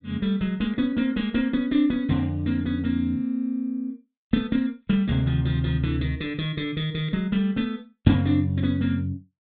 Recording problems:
low-pass filter; nothing above 4 kHz

